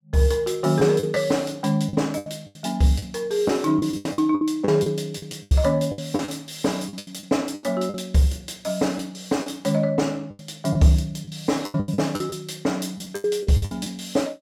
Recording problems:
lost packets; 13% of the sound replaced, filled with the last packet

